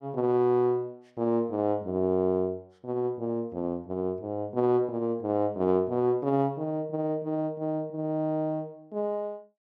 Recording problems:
none

